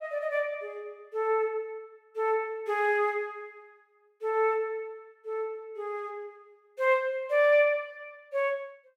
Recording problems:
none

